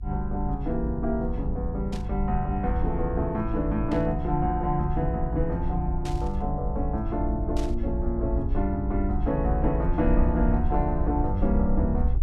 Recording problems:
rumble; below 64 Hz, SNR 2 dB
static burst; 4 times, first at 2 s; peak -8 dB vs average level

